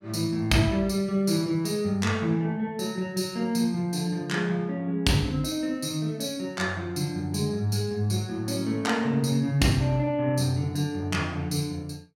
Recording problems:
none

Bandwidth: 16.5 kHz